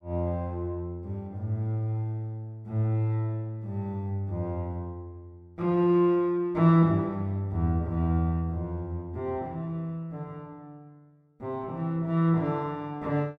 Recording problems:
none

